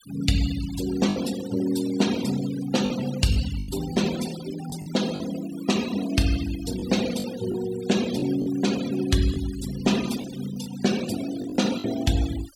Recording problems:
denoising artefacts; signal-to-artefact ratio 12 dB
packet loss; 5% of the sound replaced, filled with the last packet

